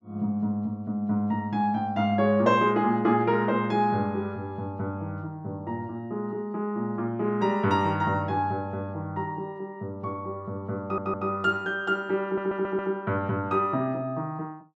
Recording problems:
stutter; at 11 s and at 12 s

